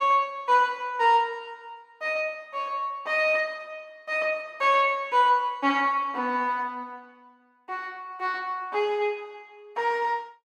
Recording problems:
none

